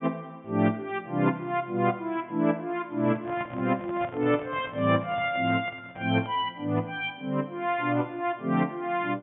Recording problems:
treble missing; nothing above 3.5 kHz
microphone handling noise; from 3 to 6.5 s; peak -8 dB vs average level

